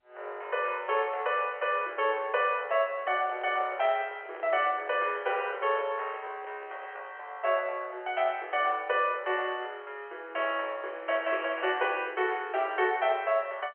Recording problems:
telephone audio; 340 Hz to 3.3 kHz, G.711
microphone handling noise; from 3 to 7 s; peak -9 dB vs average level

